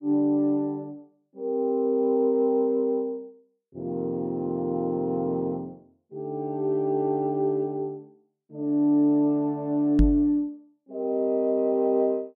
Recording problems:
microphone bump; at 10 s; peak +7 dB vs average level

